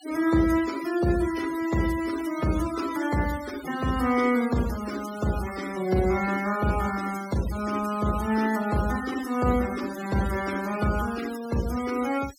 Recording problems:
noise reduction artefacts; signal-to-artefact ratio 14 dB

